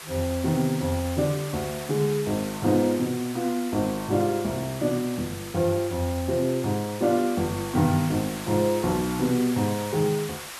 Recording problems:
background hiss; SNR 12 dB

